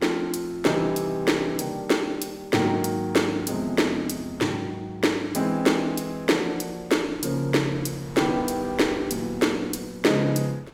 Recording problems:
wind on the microphone; below 930 Hz, SNR 23 dB

